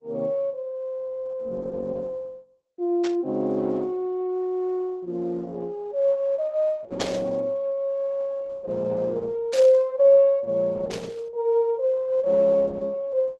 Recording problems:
codec artefacts; Opus, log-spectral distance 2 dB
static burst; 4 times, first at 3 s; peak -7 dB vs average level

